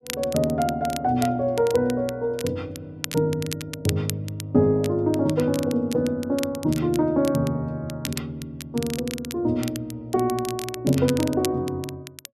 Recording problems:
crackling; vinyl, SNR 13 dB

